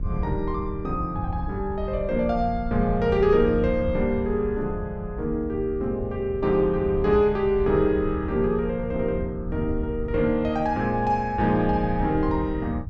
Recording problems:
wind on the microphone; below 98 Hz, SNR 9 dB

